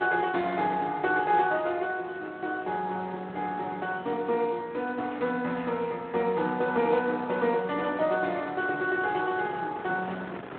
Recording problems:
phone line; 260 Hz to 3.6 kHz, Speex
wind noise; below 1.3 kHz, SNR 18 dB

